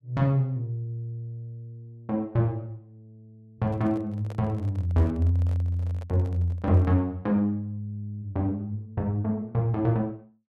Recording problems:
handling noise; from 3.5 to 7 s; peak -12 dB vs average level

